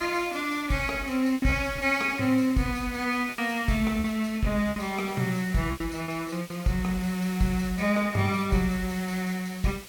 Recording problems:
hiss; slope -1 dB per octave, SNR 17 dB
lost packets; 6% of the sound replaced, filled with repeated pitch periods

